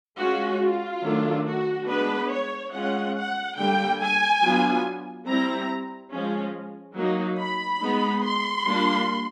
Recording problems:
none

